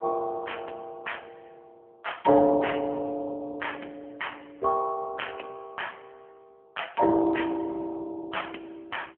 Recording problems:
phone line; 130 Hz to 3.3 kHz, AMR-NB

